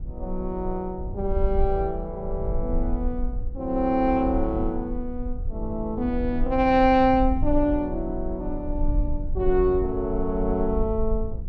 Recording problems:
low-frequency rumble; below 52 Hz, strongest tone 20 Hz, SNR 7 dB

